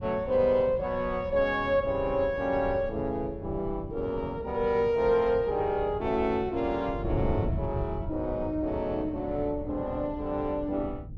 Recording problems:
wind on the microphone; below 140 Hz, SNR 11 dB

